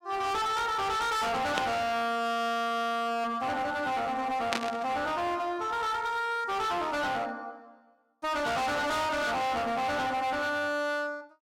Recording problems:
distorted audio; hard clipping, signal-to-distortion ratio 6 dB
static burst; at 1.5 s and at 4.5 s; peak +4 dB vs average level

